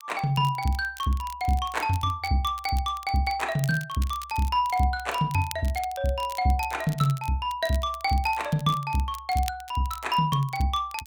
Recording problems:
crackle; vinyl, SNR 18 dB

